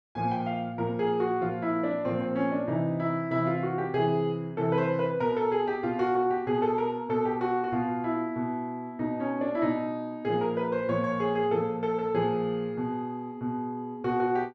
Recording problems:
none

